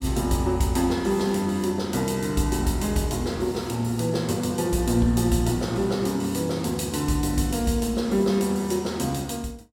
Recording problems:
none

